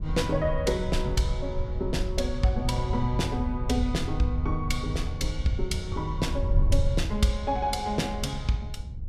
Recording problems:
wind on the microphone; below 84 Hz, SNR 3 dB

